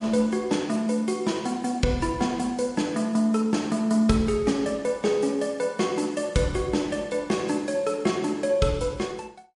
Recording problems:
codec artefacts; MP3, log-spectral distance 3 dB, nothing above 11 kHz

